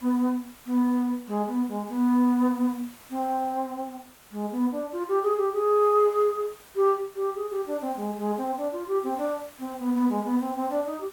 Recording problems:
background hiss; slope -2 dB per octave, SNR 23 dB

